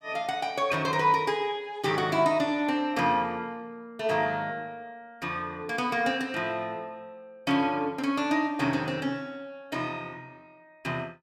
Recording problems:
none

